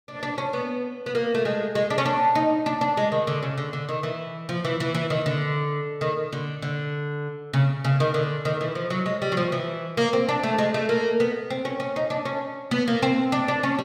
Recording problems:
none

